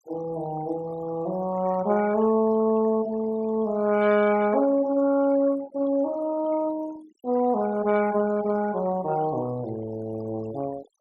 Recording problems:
denoising artefacts; signal-to-artefact ratio 19 dB

